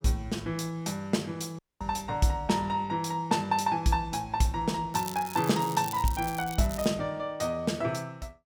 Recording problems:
audio cutting out; at 1.5 s
crackling; from 5 to 7 s; loose cable, SNR 12 dB

